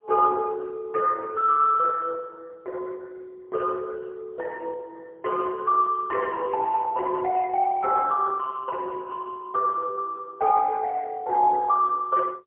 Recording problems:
telephone audio; 320 Hz to 2.8 kHz, AMR-NB, then MP3

